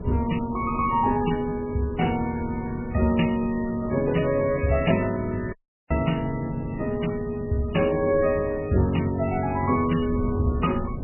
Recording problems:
lossy codec; MP3, log-spectral distance 3 dB, nothing above 2.8 kHz
hum; 50 Hz, harmonics up to 750 Hz, SNR 18 dB
wind on the microphone; below 240 Hz, SNR 13 dB
dropout; at 5.5 s

